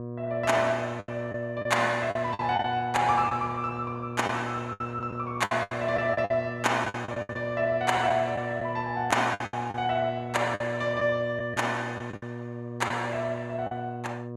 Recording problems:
hum; 60 Hz, harmonics up to 1.2 kHz, SNR 9 dB
lost packets; 9% of the sound replaced, filled with the last packet

